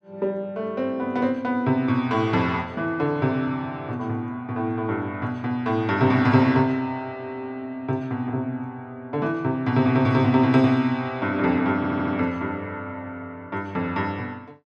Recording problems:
audio stuttering; at 12 s

